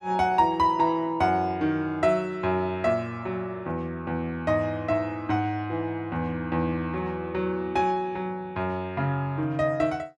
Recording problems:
none

